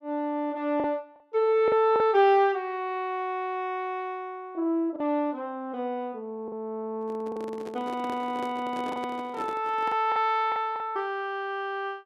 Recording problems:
packet loss; 4% of the sound replaced, filled with the last packet
microphone handling noise; from 7 to 10 s; peak -6 dB vs average level

